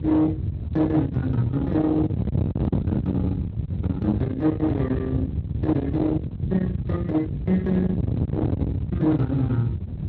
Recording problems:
lossy compression; Speex, log-spectral distance 2 dB
distortion; soft clipping, signal-to-distortion ratio 7 dB
wind on the microphone; below 310 Hz, SNR 4 dB

